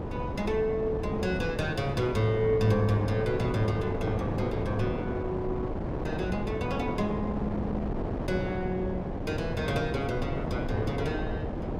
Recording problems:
wind noise; below 490 Hz, SNR 3 dB

